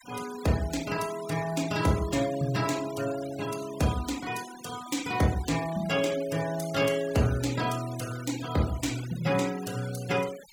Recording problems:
noise reduction artefacts; signal-to-artefact ratio 14 dB

